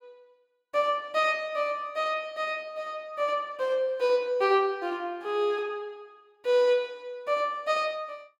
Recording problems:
none

